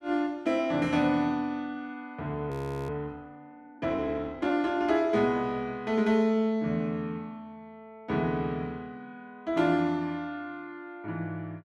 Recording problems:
frozen audio; at 2.5 s

